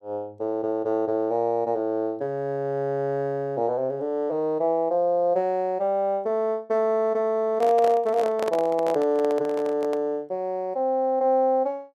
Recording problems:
handling noise; from 7.5 to 10 s; peak -2 dB vs average level

